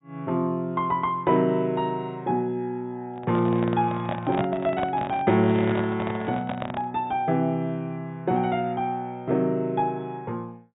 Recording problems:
treble cut off; nothing above 4 kHz
microphone handling noise; from 3 to 7 s; peak +1 dB vs average level

